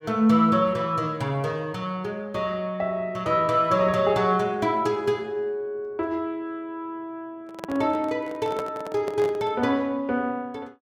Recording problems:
microphone handling noise; from 7.5 to 9.5 s; peak -4 dB vs average level

